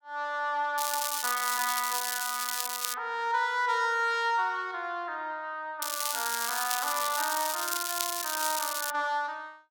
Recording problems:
crackle; from 1 to 3 s and from 6 to 9 s; loose cable, SNR 1 dB

